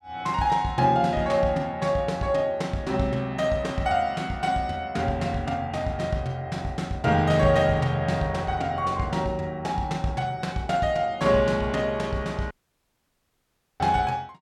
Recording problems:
dropout; at 13 s for 1.5 s

